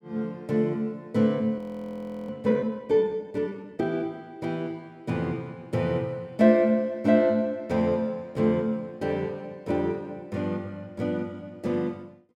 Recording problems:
frozen audio; at 1.5 s for 0.5 s

